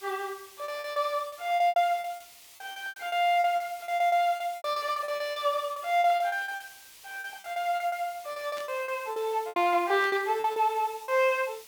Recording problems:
background hiss; SNR 20 dB
lost packets; 18% of the sound replaced, filled with repeated pitch periods
burst of static; at 8.5 s and at 10 s; peak -12 dB vs average level

